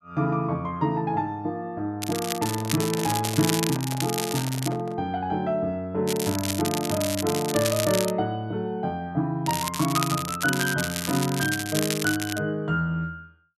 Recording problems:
crackling; from 2 to 4.5 s, from 6 to 8 s and from 9.5 to 12 s; loose cable, SNR 4 dB
microphone handling noise; from 2.5 to 5 s; peak -8 dB vs average level

